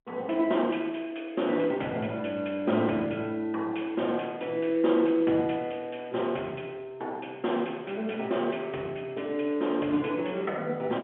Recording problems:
phone line; 190 Hz to 3.4 kHz, G.711

